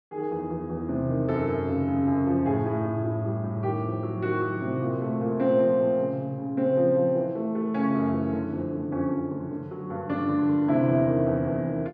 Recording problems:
none

